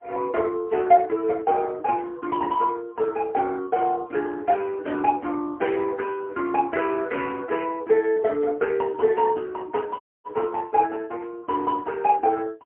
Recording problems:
telephone audio; 260 Hz to 2.5 kHz, AMR-NB, then MP3
dropout; at 10 s

